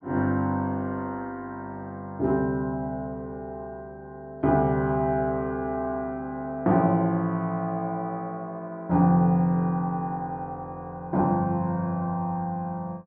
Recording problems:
none

